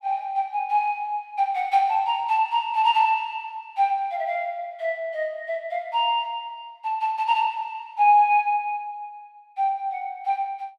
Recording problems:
none

